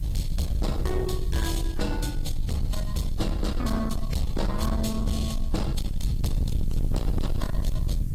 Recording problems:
lossy compression; AAC, log-spectral distance 2 dB, nothing above 14.7 kHz
distorted audio; soft clipping, signal-to-distortion ratio 6 dB
hiss; SNR 25 dB
rumble; below 94 Hz, SNR 0 dB

